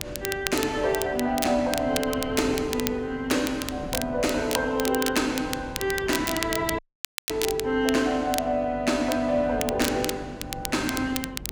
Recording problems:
hum; 50 Hz, harmonics up to 550 Hz, SNR 20 dB
wind noise; below 380 Hz, SNR 15 dB
crackling; vinyl, SNR 7 dB
dropout; at 7 s for 0.5 s

